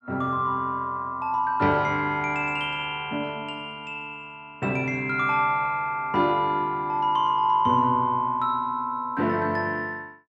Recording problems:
none

